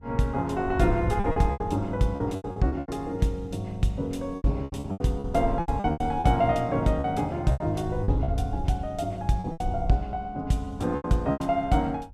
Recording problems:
wind noise; below 96 Hz, SNR 9 dB
lost packets; 12% of the sound replaced, filled with repeated pitch periods

